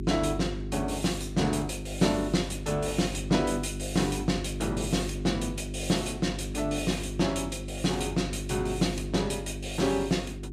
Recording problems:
mains hum; 50 Hz, harmonics up to 400 Hz, SNR 7 dB

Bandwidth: 14.5 kHz